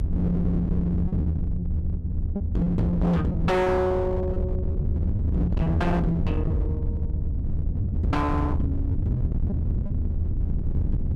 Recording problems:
distortion; hard clipping, uneven, signal-to-distortion ratio 7 dB
rumble; below 130 Hz, SNR 1 dB
lost packets; 6% of the sound replaced, filled with repeated pitch periods

